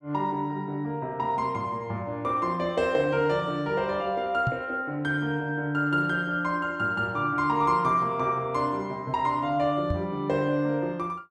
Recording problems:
microphone thump; at 4.5 s and at 10 s; peak +1 dB vs average level

